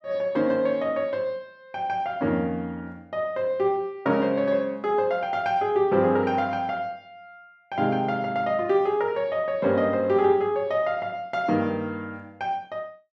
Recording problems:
none

